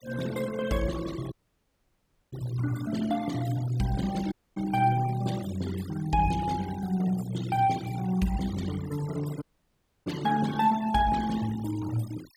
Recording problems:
denoising artefacts; signal-to-artefact ratio 15 dB
dropout; at 1.5 s for 1 s, at 4.5 s and at 9.5 s for 0.5 s

